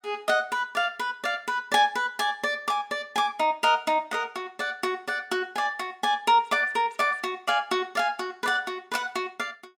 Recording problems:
none

